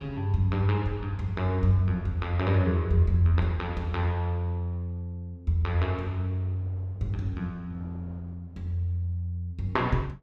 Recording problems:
wind noise; below 500 Hz, SNR 26 dB

